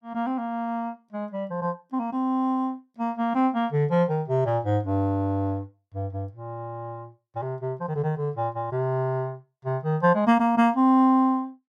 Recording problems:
none

